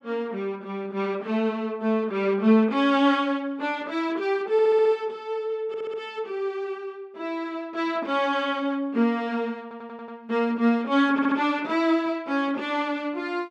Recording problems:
audio stuttering; 4 times, first at 4.5 s

